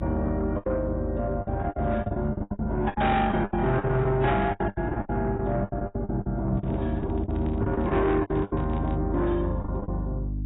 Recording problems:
lossy codec; AAC, then AAC, log-spectral distance 2 dB, nothing above 3.8 kHz
distorted audio; soft clipping, signal-to-distortion ratio 11 dB
mains hum; 50 Hz, harmonics up to 300 Hz, SNR 7 dB
packet loss; 17% of the sound replaced, filled with the last packet
microphone handling noise; from 6.5 to 9 s; peak -9 dB vs average level

